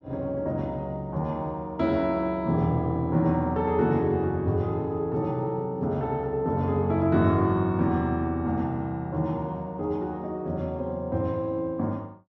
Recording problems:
none

